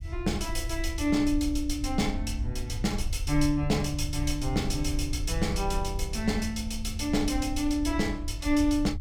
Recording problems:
rumble; below 74 Hz, SNR 6 dB

